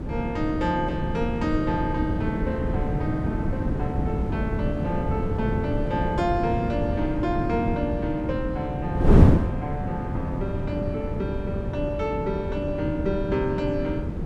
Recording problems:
wind on the microphone; below 240 Hz, SNR -1 dB

